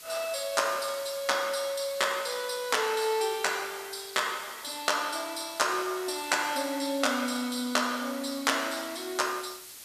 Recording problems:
background hiss; slope +2 dB per octave, SNR 15 dB

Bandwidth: 14.5 kHz